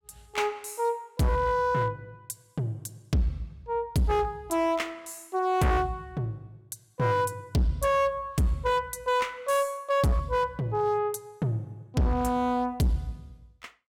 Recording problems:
distortion; hard clipping, uneven, signal-to-distortion ratio 10 dB

